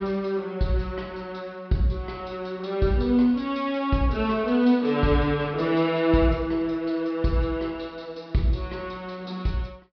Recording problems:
treble cut off; nothing above 5.5 kHz

